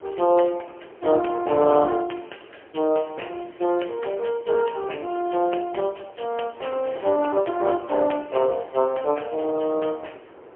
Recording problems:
phone line; 280 Hz to 3.2 kHz, AMR-NB, then MP3
wind on the microphone; below 790 Hz, SNR 21 dB

